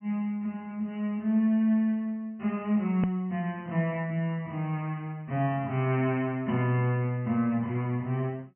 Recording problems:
treble cut off; nothing above 3 kHz
edit click; at 3 s

